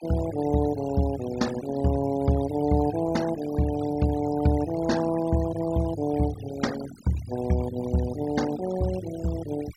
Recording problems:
noise reduction artefacts; signal-to-artefact ratio 15 dB

